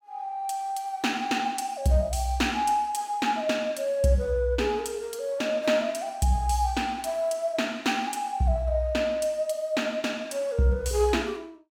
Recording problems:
none

